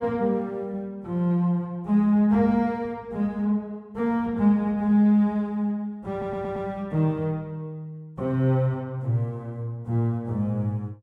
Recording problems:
audio stuttering; at 6 s

